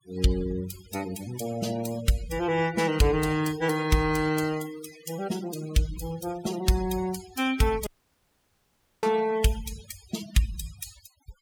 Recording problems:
denoising artefacts; signal-to-artefact ratio 14 dB
audio cutting out; at 8 s for 1 s

